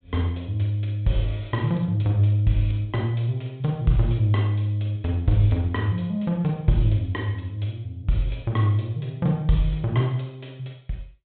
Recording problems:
treble cut off; nothing above 4 kHz

